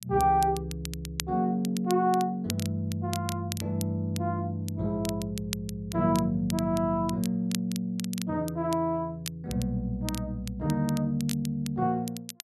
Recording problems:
crackle; vinyl, SNR 12 dB

